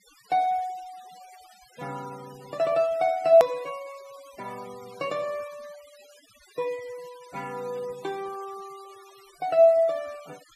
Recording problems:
noise reduction artefacts; signal-to-artefact ratio 25 dB
edit click; at 3.5 s

